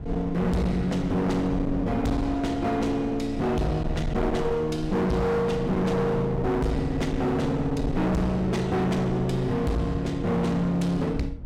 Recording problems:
distorted audio; hard clipping, uneven, signal-to-distortion ratio 5 dB
low-frequency rumble; below 200 Hz, SNR 11 dB

